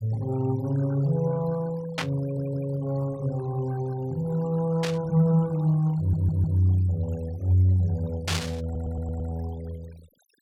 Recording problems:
denoising artefacts; signal-to-artefact ratio 23 dB
static burst; at 2 s, at 5 s and at 8.5 s; peak +1 dB vs average level
audio stuttering; at 2 s, at 6 s and at 8.5 s

